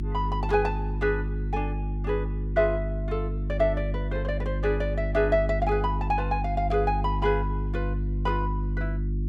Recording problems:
hum; 50 Hz, harmonics up to 350 Hz, SNR 2 dB

